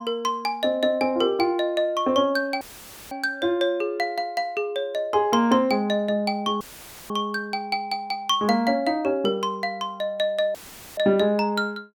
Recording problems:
audio cutting out; at 2.5 s for 0.5 s, at 6.5 s and at 11 s; filled with static

